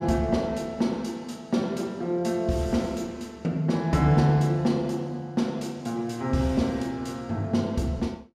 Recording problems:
none

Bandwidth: 15 kHz